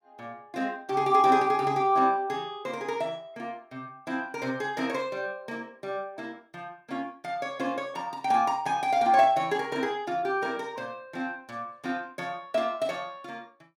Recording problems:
none

